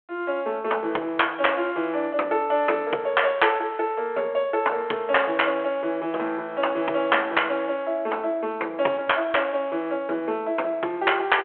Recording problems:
telephone audio; 300 Hz to 3.4 kHz, G.726

